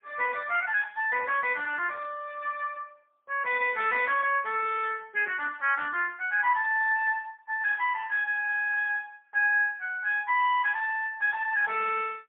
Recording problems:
phone line; 320 Hz to 3.3 kHz, AMR-NB, then MP3

